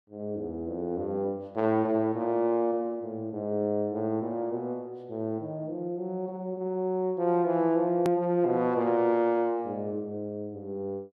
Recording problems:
edit click; at 8 s

